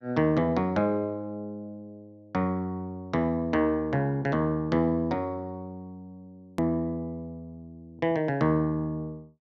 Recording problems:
hard cut with a click; at 6.5 s

